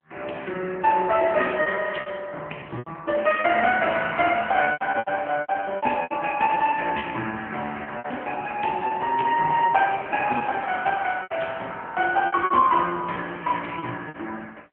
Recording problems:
phone line; 240 Hz to 3 kHz, AMR-NB
packet loss; 11% of the sound replaced, filled with repeated pitch periods

